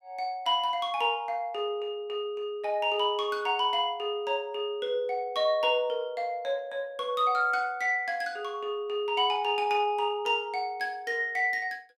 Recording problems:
none

